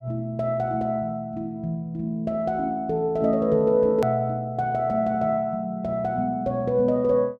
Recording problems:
click at an edit; at 4 s

